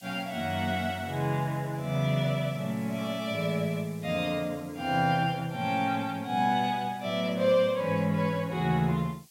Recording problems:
background hiss; SNR 25 dB

